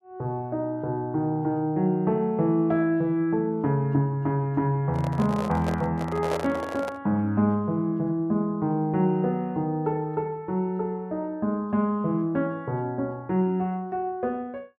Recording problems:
handling noise; from 5 to 7 s; peak 0 dB vs average level

